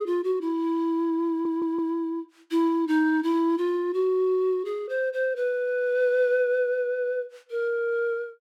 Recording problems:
audio stuttering; at 1.5 s

